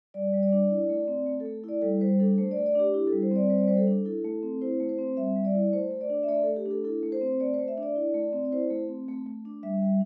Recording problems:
none

